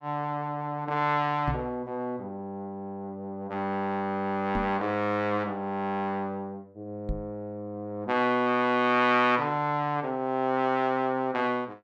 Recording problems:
microphone thump; at 1.5 s, at 4.5 s and at 7 s; peak +1 dB vs average level

